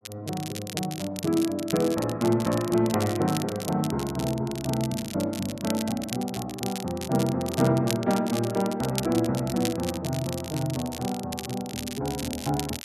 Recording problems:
crackling; vinyl, SNR 10 dB

